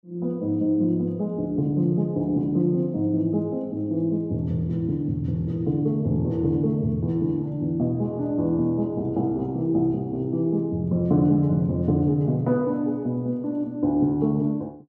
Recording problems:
none

